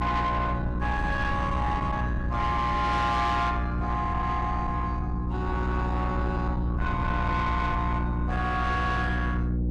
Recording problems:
distorted audio; soft clipping, signal-to-distortion ratio 10 dB
mains hum; 60 Hz, harmonics up to 360 Hz, SNR 2 dB
wind noise; below 150 Hz, SNR 7 dB

